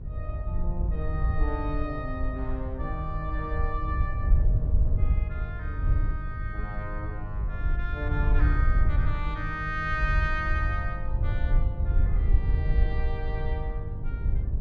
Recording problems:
hum; 50 Hz, harmonics up to 600 Hz, SNR 6 dB
wind on the microphone; below 72 Hz, SNR -6 dB

